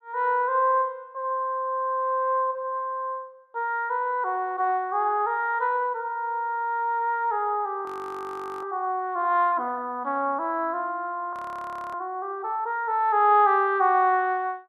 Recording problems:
frozen audio; at 8 s for 1 s and at 11 s for 0.5 s

